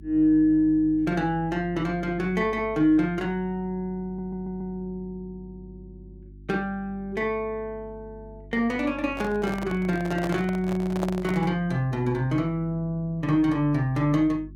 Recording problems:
electrical hum; 50 Hz, harmonics up to 350 Hz, SNR 19 dB
audio stuttering; at 4 s
microphone handling noise; from 9 to 12 s; peak -1 dB vs average level

